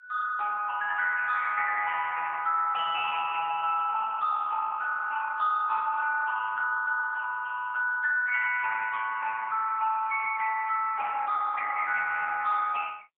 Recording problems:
phone line; 990 Hz to 2 kHz, AMR-NB, then MP3

